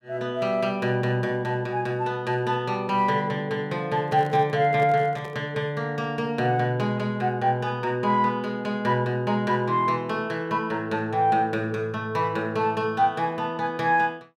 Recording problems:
handling noise; from 4 to 5.5 s; peak -9 dB vs average level

